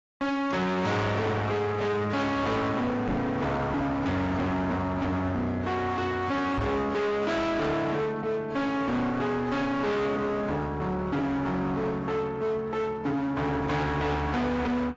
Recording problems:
codec artefacts; AAC, log-spectral distance 2 dB, nothing above 7.3 kHz
distortion; hard clipping, uneven, signal-to-distortion ratio 6 dB
microphone bump; at 3 s and at 6.5 s; peak +1 dB vs average level

